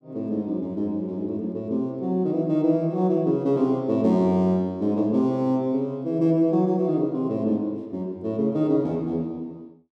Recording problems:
none

